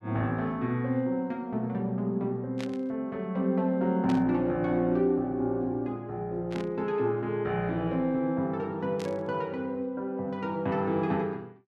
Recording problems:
static burst; 4 times, first at 2.5 s; peak -8 dB vs average level

